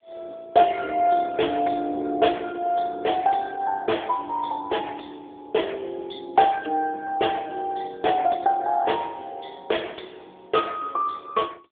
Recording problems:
telephone audio; 300 Hz to 3.5 kHz, AMR-NB

